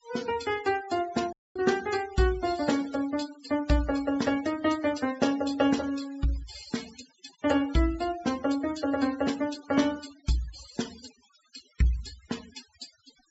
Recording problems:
treble missing; nothing above 8 kHz
denoising artefacts; signal-to-artefact ratio 15 dB
audio cutting out; at 1.5 s

